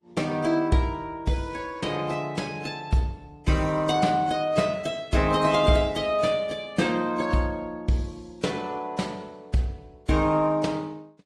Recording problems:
lossy compression; AAC, then AAC, log-spectral distance 3 dB, nothing above 11.3 kHz

